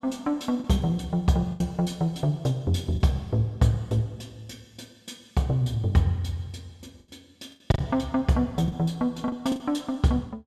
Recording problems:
packet loss; 4% of the sound replaced, filled with the last packet

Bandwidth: 13.5 kHz